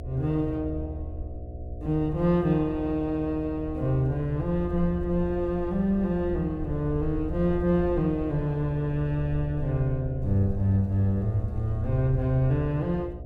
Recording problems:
hum; 60 Hz, harmonics up to 720 Hz, SNR 15 dB
low-frequency rumble; below 78 Hz, SNR 11 dB

